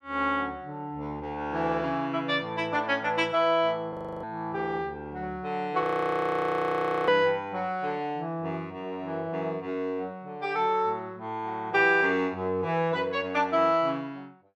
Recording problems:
frozen audio; at 4 s and at 6 s for 1.5 s

